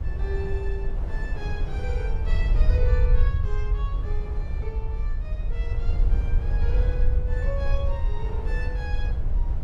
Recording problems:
rumble; below 62 Hz, SNR -11 dB
wind noise; below 490 Hz, SNR 3 dB

